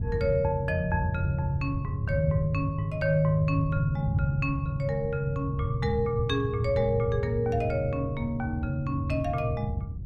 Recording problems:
wind on the microphone; below 130 Hz, SNR 6 dB

